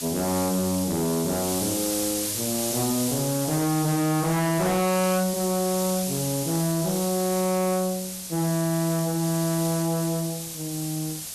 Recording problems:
distorted audio; soft clipping, signal-to-distortion ratio 7 dB
hiss; SNR 5 dB

